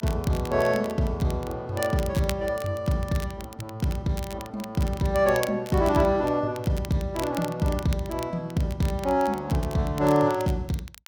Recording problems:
crackle; vinyl, SNR 17 dB

